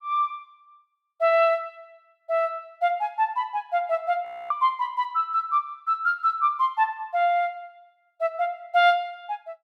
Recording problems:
frozen audio; at 4.5 s

